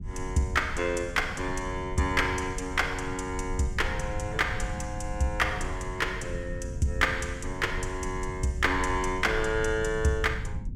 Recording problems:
low-frequency rumble; below 110 Hz, SNR 9 dB

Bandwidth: 16 kHz